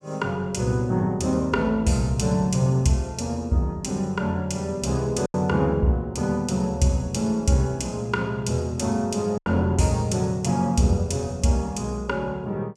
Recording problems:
lost packets; 1.3% of the sound replaced, filled with silence

